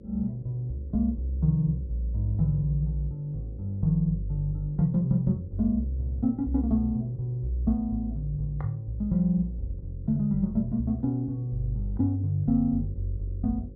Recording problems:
hum; 50 Hz, harmonics up to 550 Hz, SNR 21 dB

